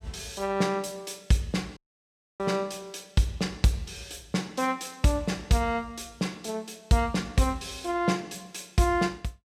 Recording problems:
audio cutting out; at 2 s for 0.5 s

